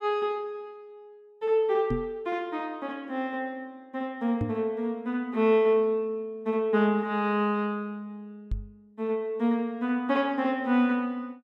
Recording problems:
knock on the microphone; at 2 s, at 4.5 s and at 8.5 s; peak +1 dB vs average level

